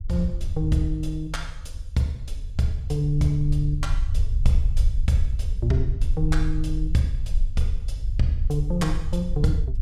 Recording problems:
rumble; below 58 Hz, strongest tone 24 Hz, SNR 2 dB

